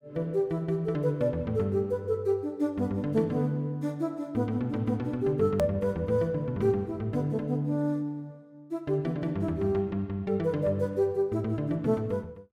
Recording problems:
hard cut with a click; at 5.5 s

